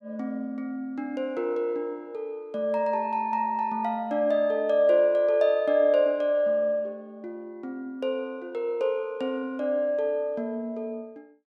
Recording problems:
none

